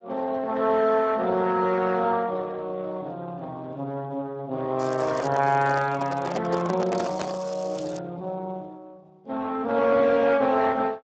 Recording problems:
codec artefacts; Speex, log-spectral distance 4 dB
crackling; at 5 s and from 7 to 8 s; loose cable, SNR 21 dB
handling noise; from 5 to 7.5 s; peak 0 dB vs average level

